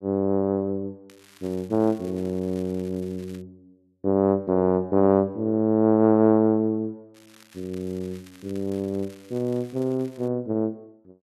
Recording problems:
crackle; from 1 to 3.5 s and from 7 to 10 s; loose cable, SNR 28 dB

